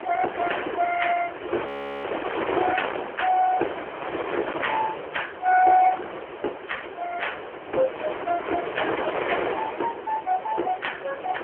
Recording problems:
telephone audio; 300 Hz to 3.2 kHz, AMR-NB
wind noise; below 1.4 kHz, SNR 5 dB
frozen audio; at 1.5 s

